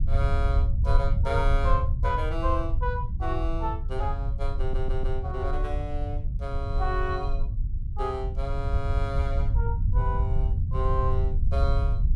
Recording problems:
rumble; below 78 Hz, SNR -5 dB
audio stuttering; at 4.5 s

